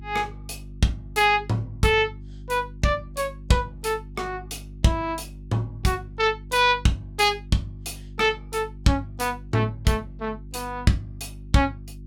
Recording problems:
electrical hum; 50 Hz, harmonics up to 350 Hz, SNR 16 dB

